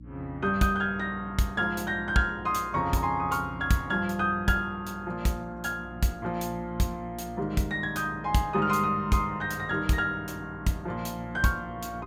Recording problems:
mains hum; 60 Hz, harmonics up to 300 Hz, SNR 18 dB

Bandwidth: 16.5 kHz